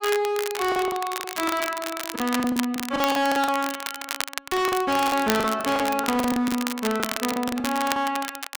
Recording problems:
distorted audio; hard clipping, signal-to-distortion ratio 7 dB
crackling; vinyl, SNR 7 dB
lost packets; 15% of the sound replaced, filled with the last packet

